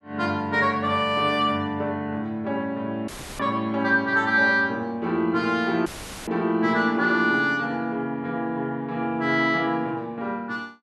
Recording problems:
audio cutting out; at 3 s and at 6 s; filled with static

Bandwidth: 12 kHz